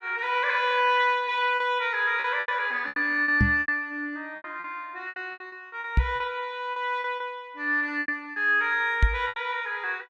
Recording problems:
lost packets; 11% of the sound replaced, filled with repeated pitch periods
microphone bump; at 3.5 s, at 6 s and at 9 s; peak +7 dB vs average level

